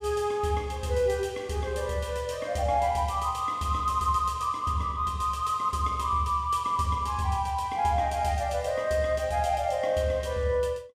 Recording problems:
none

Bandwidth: 15.5 kHz